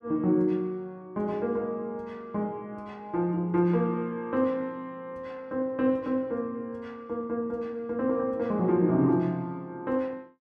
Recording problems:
none

